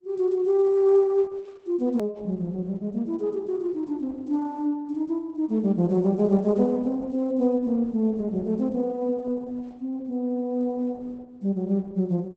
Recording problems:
codec artefacts; Opus, log-spectral distance 2 dB, nothing above 19.5 kHz
hard cut with a click; at 2 s

